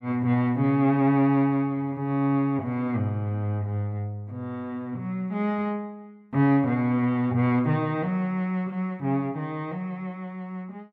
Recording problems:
none

